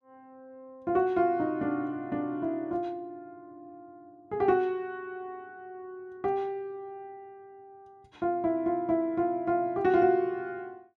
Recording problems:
none

